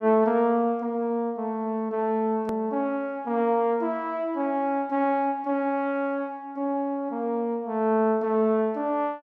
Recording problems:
edit click; at 2.5 s

